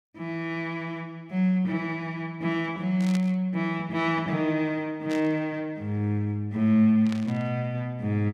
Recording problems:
static burst; at 3 s, at 5 s and at 7 s; peak -8 dB vs average level

